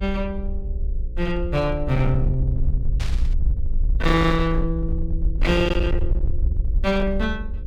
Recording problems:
distorted audio; hard clipping, uneven, signal-to-distortion ratio 11 dB
mains hum; 60 Hz, harmonics up to 540 Hz, SNR 18 dB
low-frequency rumble; below 62 Hz, SNR 2 dB
static burst; at 3 s; peak -7 dB vs average level

